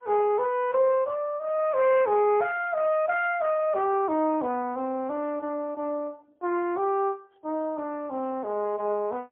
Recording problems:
telephone audio; 260 Hz to 3.5 kHz, AMR-NB, then MP3

